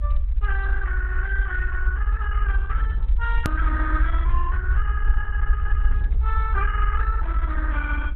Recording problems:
lossy codec; Opus, log-spectral distance 3 dB
rumble; below 60 Hz, SNR -5 dB
click at an edit; at 3.5 s

